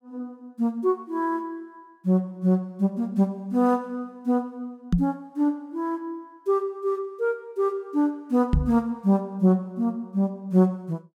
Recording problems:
microphone thump; at 5 s and at 8.5 s; peak +7 dB vs average level

